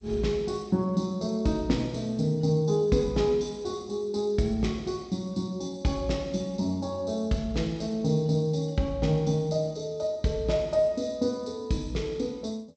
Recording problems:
lossy compression; G.722, log-spectral distance 2 dB, nothing above 8 kHz

